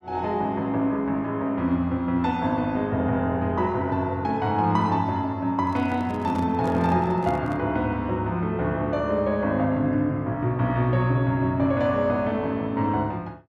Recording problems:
handling noise; from 5.5 to 7.5 s; peak -4 dB vs average level

